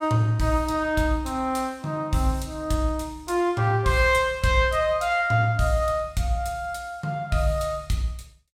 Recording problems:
none

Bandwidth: 16.5 kHz